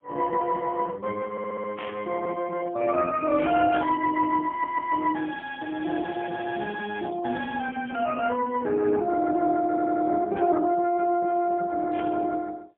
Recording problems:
telephone audio; 220 Hz to 2.8 kHz, AMR-NB, then MP3
audio stuttering; at 1.5 s, at 4.5 s and at 9.5 s
static burst; 4 times, first at 2 s; peak -10 dB vs average level

